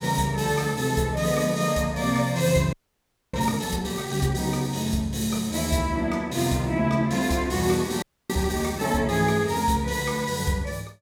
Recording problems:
frozen audio; at 2.5 s for 0.5 s and at 8 s

